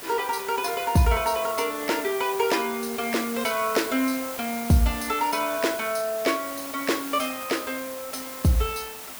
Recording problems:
hiss; slope -2 dB per octave, SNR 9 dB

